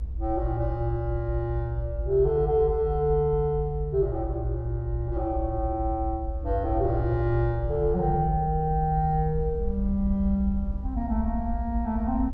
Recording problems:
rumble; below 70 Hz, strongest tone 54 Hz, SNR 5 dB

